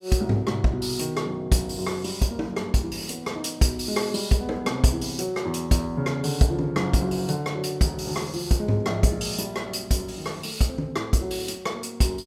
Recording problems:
none

